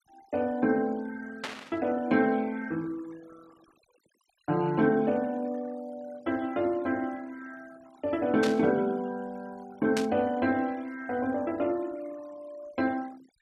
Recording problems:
denoising artefacts; signal-to-artefact ratio 24 dB
burst of static; at 1.5 s, at 8.5 s and at 10 s; peak 0 dB vs average level

